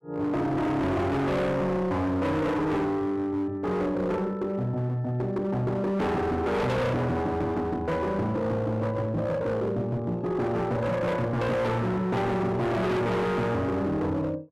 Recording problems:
distorted audio; hard clipping, uneven, signal-to-distortion ratio 6 dB

